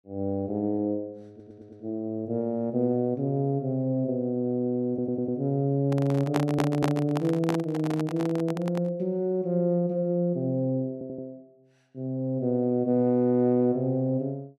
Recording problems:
stutter; 4 times, first at 1.5 s
handling noise; from 6 to 9 s; peak +2 dB vs average level

